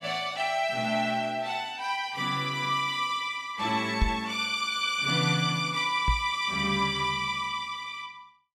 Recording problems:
knock on the microphone; at 4 s and at 6 s; peak +5 dB vs average level

